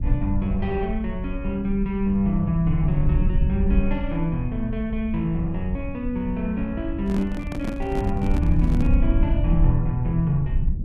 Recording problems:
rumble; below 78 Hz, SNR 2 dB
microphone handling noise; from 7 to 9 s; peak 0 dB vs average level

